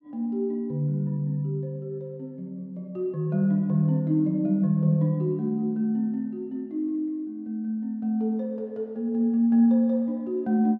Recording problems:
none

